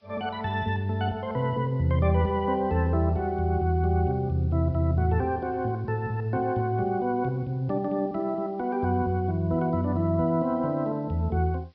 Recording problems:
low-pass filter; nothing above 5.5 kHz
background hiss; SNR 41 dB

